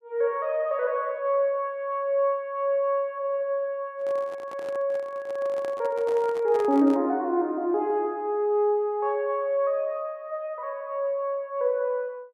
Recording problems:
microphone handling noise; from 4 to 7 s; peak -8 dB vs average level

